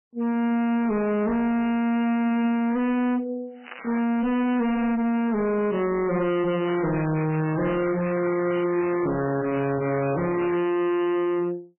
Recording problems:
lossy compression; MP3, log-spectral distance 5 dB, nothing above 2.6 kHz
distortion; hard clipping, signal-to-distortion ratio 4 dB
crackling; at 3.5 s and from 6.5 to 11 s; loose cable, SNR 12 dB

